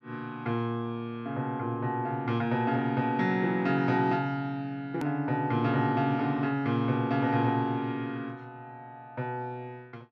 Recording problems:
click at an edit; at 5 s

